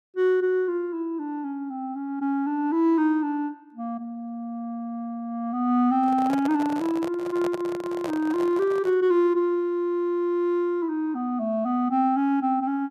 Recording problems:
handling noise; from 6 to 9 s; peak -3 dB vs average level

